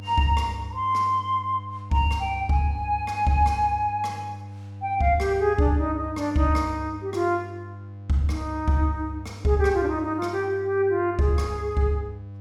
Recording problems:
hum; 50 Hz, harmonics up to 500 Hz, SNR 15 dB

